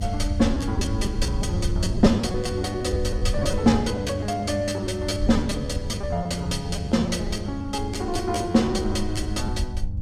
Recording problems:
hum; 50 Hz, harmonics up to 600 Hz, SNR 9 dB
rumble; below 82 Hz, SNR 6 dB
packet loss; 12% of the sound replaced, filled with repeated pitch periods

